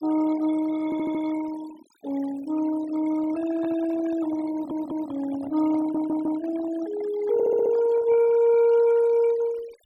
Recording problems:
noise reduction artefacts; signal-to-artefact ratio 17 dB
audio stuttering; 4 times, first at 1 s
handling noise; from 3.5 to 8.5 s; peak -11 dB vs average level

